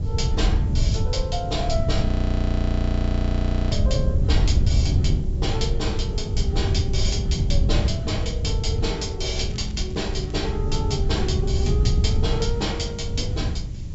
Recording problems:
treble missing; nothing above 7.6 kHz
background hiss; slope +2 dB per octave, SNR 26 dB
wind noise; below 110 Hz, SNR -4 dB
audio freezing; at 2 s for 1.5 s
crackling; from 9.5 to 10 s; loose cable, SNR 21 dB

